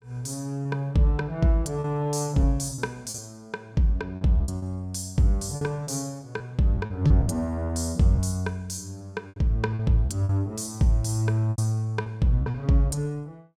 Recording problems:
packet loss; 8% of the sound replaced, filled with repeated pitch periods

